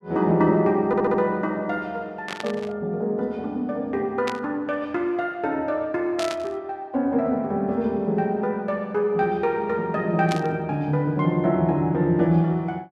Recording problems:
audio stuttering; at 1 s
static burst; 4 times, first at 2.5 s; peak -3 dB vs average level

